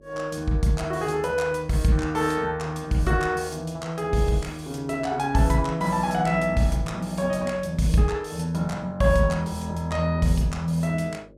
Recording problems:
hum; 50 Hz, harmonics up to 600 Hz, SNR 27 dB

